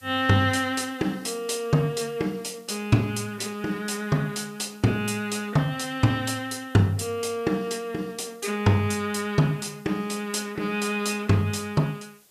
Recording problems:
hiss; SNR 28 dB

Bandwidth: 14.5 kHz